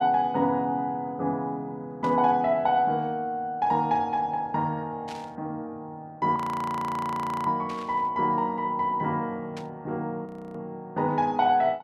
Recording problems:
burst of static; 4 times, first at 2 s; peak -12 dB vs average level
audio freezing; at 6.5 s for 1 s and at 10 s

